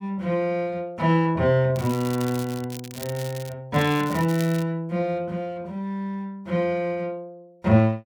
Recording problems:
crackling; from 2 to 3.5 s and at 3.5 s; loose cable, SNR 15 dB

